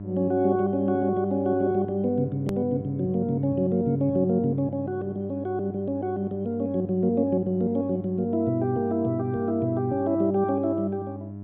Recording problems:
treble missing; nothing above 4 kHz
mains hum; 50 Hz, harmonics up to 700 Hz, SNR 12 dB
click at an edit; at 2.5 s

